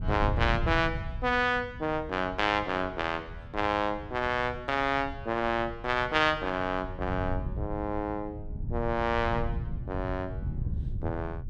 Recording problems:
wind on the microphone; below 120 Hz, SNR 8 dB

